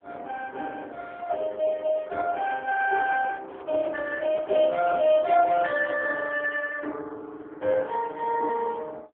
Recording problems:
telephone audio; 340 Hz to 2.3 kHz, AMR-NB
handling noise; from 3 to 6.5 s; peak -9 dB vs average level

